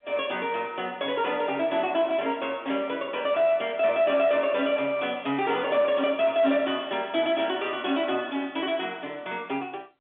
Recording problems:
phone line; 170 Hz to 3.6 kHz, G.711
distorted audio; soft clipping, signal-to-distortion ratio 10 dB

